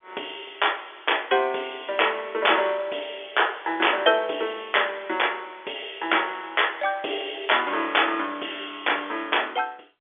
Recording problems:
telephone audio; 260 Hz to 3.5 kHz, G.711

